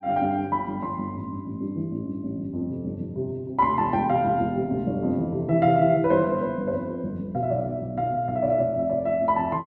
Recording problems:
none

